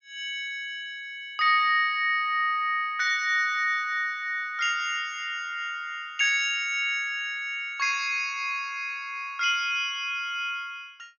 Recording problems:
treble cut off; nothing above 6.7 kHz

